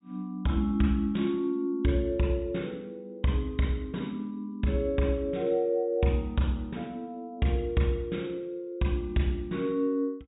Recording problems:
treble cut off; nothing above 4 kHz

